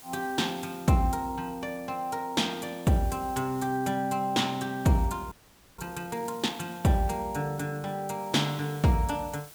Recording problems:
hiss; slope -1 dB per octave, SNR 20 dB
frozen audio; at 5.5 s

